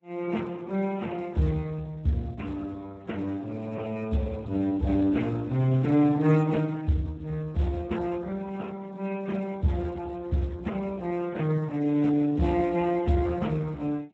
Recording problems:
lossy compression; MP3, then Speex, log-spectral distance 6 dB

